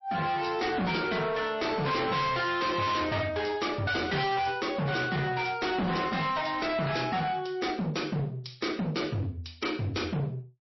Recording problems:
lossy codec; MP3, log-spectral distance 5 dB, nothing above 5.7 kHz
distorted audio; hard clipping, signal-to-distortion ratio 6 dB

